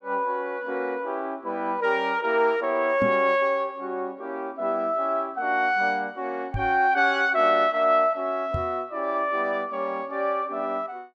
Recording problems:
microphone thump; at 3 s, at 6.5 s and at 8.5 s; peak -2 dB vs average level

